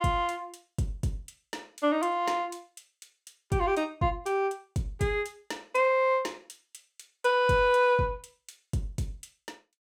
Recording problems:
none

